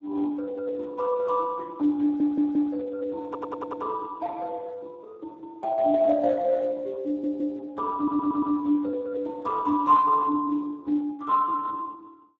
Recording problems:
lossy codec; Speex, log-spectral distance 2 dB
stutter; 4 times, first at 2 s

